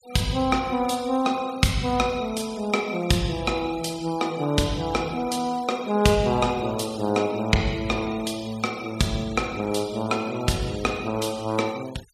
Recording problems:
denoising artefacts; signal-to-artefact ratio 20 dB

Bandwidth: 14.5 kHz